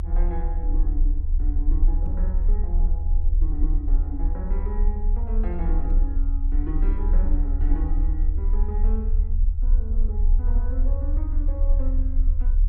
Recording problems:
low-frequency rumble; below 42 Hz, strongest tone 32 Hz, SNR -12 dB
microphone bump; at 2 s and at 6 s; peak +3 dB vs average level

